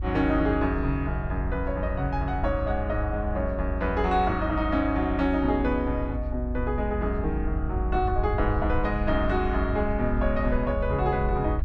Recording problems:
low-frequency rumble; below 78 Hz, strongest tone 52 Hz, SNR 4 dB

